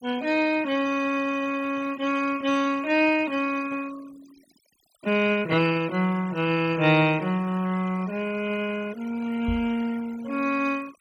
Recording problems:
denoising artefacts; signal-to-artefact ratio 18 dB
microphone bump; at 9.5 s; peak -2 dB vs average level

